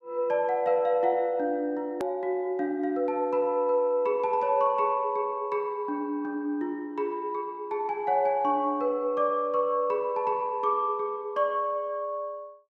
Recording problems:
hard cut with a click; at 2 s

